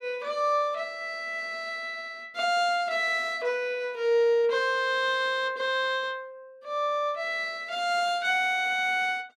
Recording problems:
none

